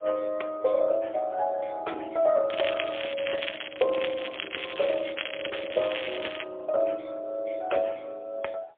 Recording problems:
telephone audio; 320 Hz to 3.5 kHz, AMR-NB, then MP3
crackling; from 2.5 to 6.5 s; loose cable, SNR 8 dB

